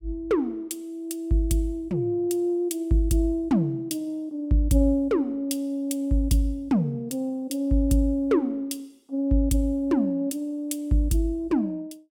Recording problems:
none

